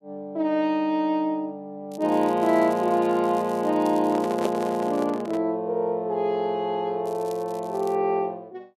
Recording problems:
crackling; from 2 to 4 s, from 4 to 5 s and at 7 s; loose cable, SNR 25 dB
microphone handling noise; from 4 to 5.5 s; peak +1 dB vs average level

